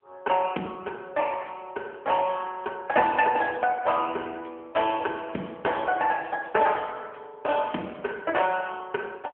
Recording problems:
telephone audio; 220 Hz to 3.3 kHz, AMR-NB

